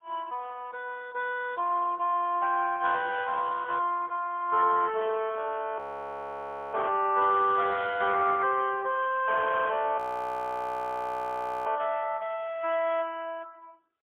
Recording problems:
phone line; 340 Hz to 3.4 kHz, AMR-NB, then MP3
audio freezing; at 6 s for 1 s and at 10 s for 1.5 s

